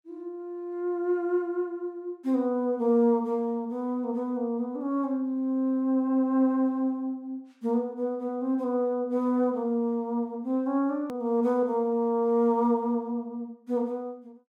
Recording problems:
hard cut with a click; at 11 s

